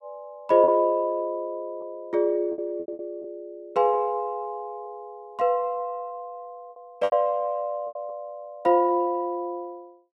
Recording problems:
lost packets; 5% of the sound replaced, filled with repeated pitch periods

